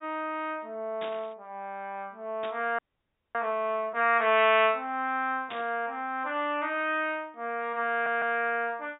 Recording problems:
treble cut off; nothing above 4 kHz
burst of static; at 1 s, at 2.5 s and at 5.5 s; peak -8 dB vs average level
frozen audio; at 3 s for 0.5 s
stutter; at 8 s

